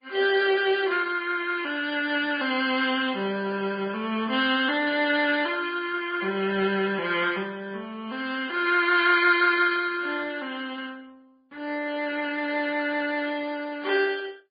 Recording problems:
lossy compression; MP2, then MP3, log-spectral distance 4 dB, nothing above 4.8 kHz

